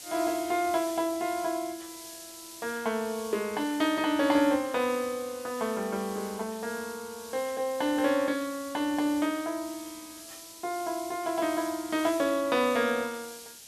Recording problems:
hiss; SNR 14 dB

